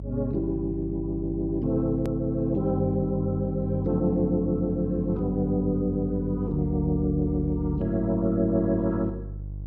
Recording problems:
electrical hum; 50 Hz, harmonics up to 350 Hz, SNR 10 dB
hard cut with a click; at 2 s

